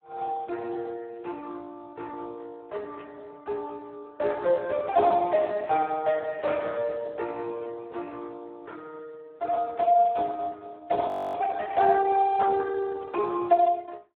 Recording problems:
telephone audio; 260 Hz to 2.3 kHz, Speex
burst of static; 5 times, first at 3 s; peak -21 dB vs average level
audio freezing; at 11 s

